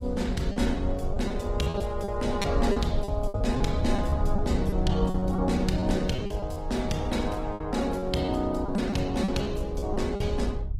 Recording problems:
lossy compression; Opus, log-spectral distance 3 dB, nothing above 18.3 kHz
rumble; below 74 Hz, SNR 5 dB
packet loss; 9% of the sound replaced, filled with repeated pitch periods

